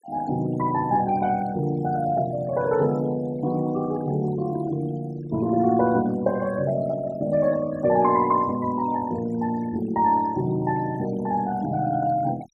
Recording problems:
noise reduction artefacts; signal-to-artefact ratio 20 dB

